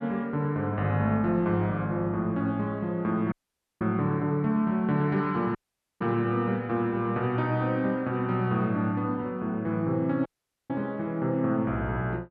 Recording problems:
audio cutting out; at 3.5 s, at 5.5 s and at 10 s

